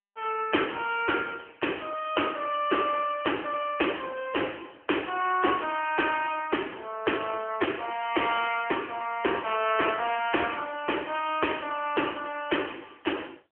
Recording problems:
phone line; 300 Hz to 3.2 kHz, AMR-NB

